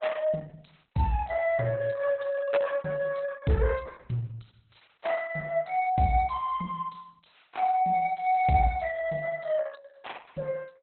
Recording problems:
codec artefacts; Opus, log-spectral distance 5 dB, nothing above 4 kHz

